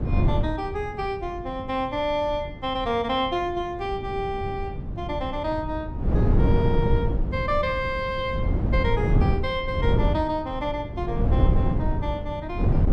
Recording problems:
wind on the microphone; below 160 Hz, SNR -2 dB

